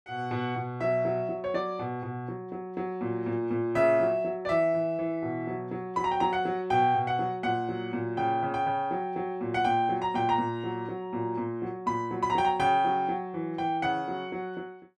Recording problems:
none

